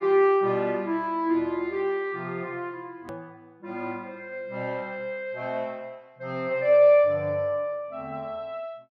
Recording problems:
hard cut with a click; at 3 s

